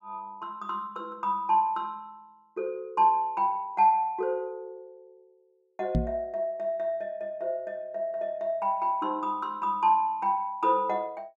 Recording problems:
knock on the microphone; at 6 s; peak +5 dB vs average level

